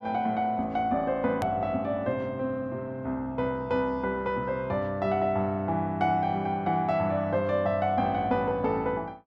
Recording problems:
hard cut with a click; at 1.5 s

